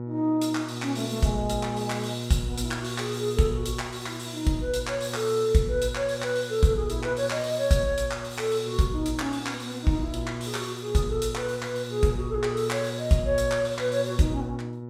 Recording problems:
mains hum; 60 Hz, harmonics up to 960 Hz, SNR 9 dB

